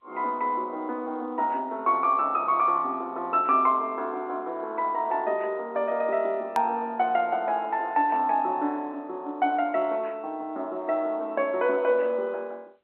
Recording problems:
telephone audio; 240 Hz to 3.3 kHz, G.711
hard cut with a click; at 6.5 s

